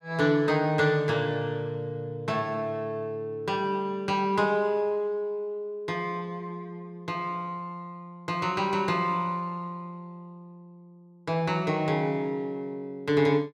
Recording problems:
none

